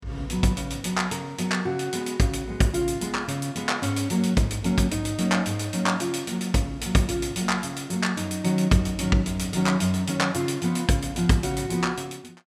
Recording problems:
none

